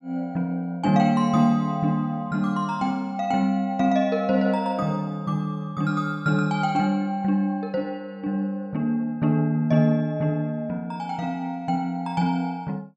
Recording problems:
none

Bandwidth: 12 kHz